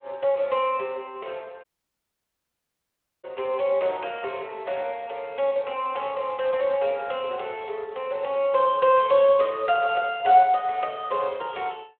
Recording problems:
phone line; 300 Hz to 3.5 kHz, Speex
audio cutting out; at 1.5 s for 1.5 s

